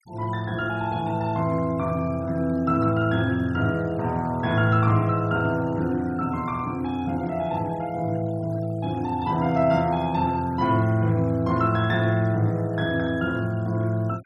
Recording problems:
noise reduction artefacts; signal-to-artefact ratio 26 dB

